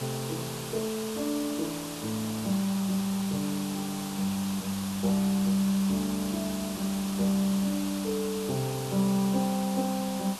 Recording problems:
hiss; SNR 8 dB

